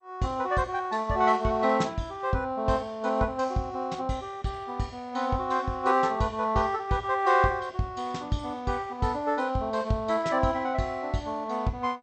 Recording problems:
codec artefacts; MP2, log-spectral distance 2 dB, nothing above 8.2 kHz

